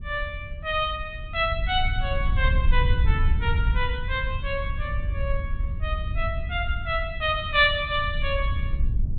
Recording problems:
low-pass filter; nothing above 4 kHz
wind noise; below 76 Hz, SNR 2 dB

